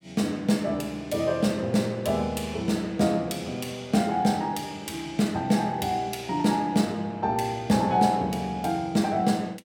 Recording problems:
none

